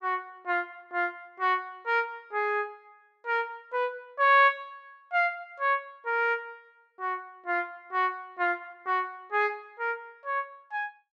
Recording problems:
none

